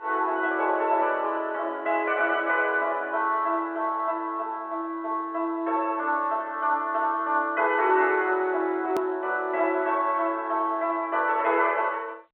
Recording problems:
phone line; 220 Hz to 3.3 kHz, G.711
click at an edit; at 9 s

